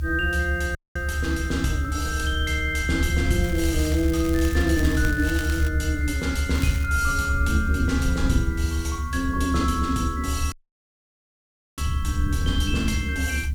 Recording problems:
hiss; slope 0 dB per octave, SNR 27 dB
rumble; below 76 Hz, strongest tone 74 Hz, SNR 1 dB
audio cutting out; at 1 s and at 11 s for 1.5 s
crackle; from 3.5 to 5.5 s and at 6.5 s; loose cable, SNR 13 dB

